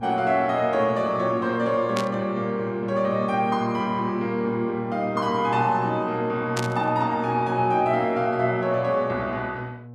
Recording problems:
hum; 60 Hz, harmonics up to 840 Hz, SNR 17 dB
burst of static; at 2 s and at 6.5 s; peak -3 dB vs average level

